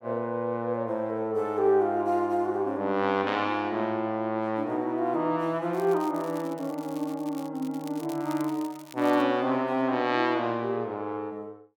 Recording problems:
crackling; from 5.5 to 9 s; loose cable, SNR 22 dB

